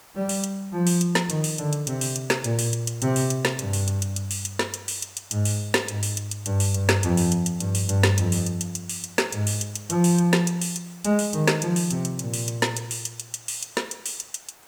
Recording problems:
background hiss; SNR 26 dB

